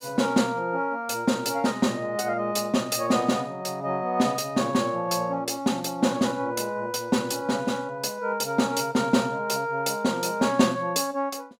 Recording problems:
none

